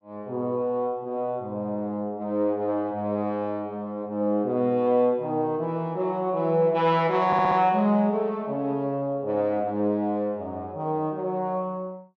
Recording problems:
audio stuttering; at 7.5 s

